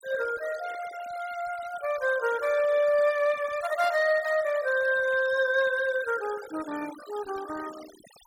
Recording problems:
noise reduction artefacts; signal-to-artefact ratio 17 dB

